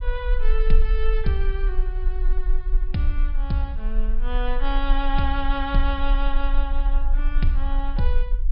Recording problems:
treble cut off; nothing above 5.5 kHz
low-frequency rumble; below 36 Hz, strongest tone 22 Hz, SNR -3 dB

